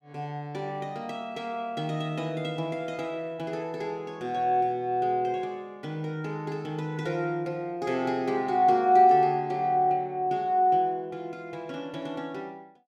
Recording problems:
none

